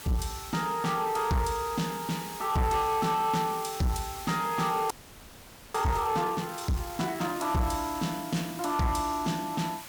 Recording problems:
distorted audio; soft clipping, signal-to-distortion ratio 12 dB
hiss; slope 0 dB per octave, SNR 13 dB
audio freezing; at 5 s for 1 s

